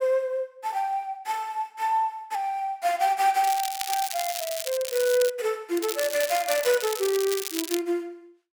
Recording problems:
crackle; from 3.5 to 5.5 s and from 6 to 8 s; loose cable, SNR 6 dB

